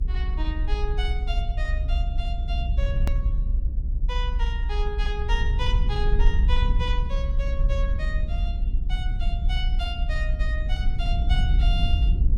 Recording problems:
rumble; below 60 Hz, strongest tone 34 Hz, SNR -8 dB
hard cut with a click; at 3 s

